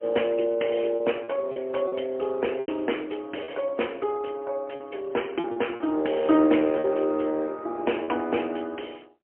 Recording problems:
phone line; 240 Hz to 3.2 kHz, AMR-NB, then MP3
lost packets; 6% of the sound replaced, filled with repeated pitch periods

